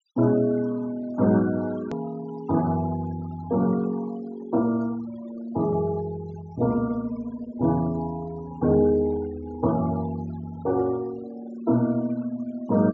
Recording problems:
treble missing; nothing above 7.4 kHz
denoising artefacts; signal-to-artefact ratio 18 dB
edit click; at 2 s

